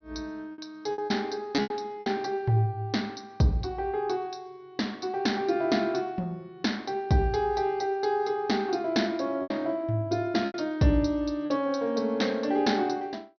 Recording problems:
treble missing; nothing above 6 kHz
packet loss; 4% of the sound replaced, filled with repeated pitch periods

